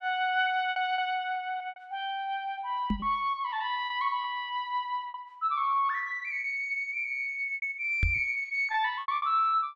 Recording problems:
lost packets; 8% of the sound replaced, filled with repeated pitch periods
microphone bump; at 3 s and at 8 s; peak +4 dB vs average level

